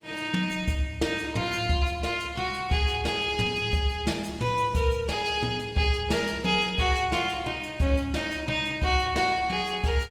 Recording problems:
codec artefacts; Opus, log-spectral distance 3 dB, nothing above 19 kHz

